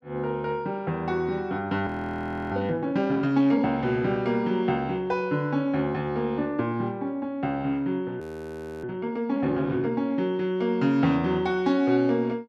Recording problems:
frozen audio; at 2 s for 0.5 s and at 8 s for 0.5 s

